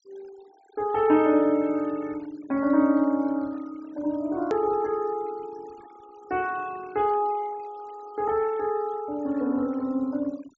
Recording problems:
low-pass filter; nothing above 8 kHz
noise reduction artefacts; signal-to-artefact ratio 24 dB
hard cut with a click; at 4.5 s

